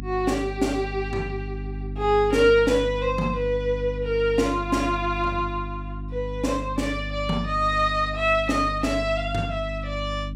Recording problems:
hum; 50 Hz, harmonics up to 300 Hz, SNR 9 dB

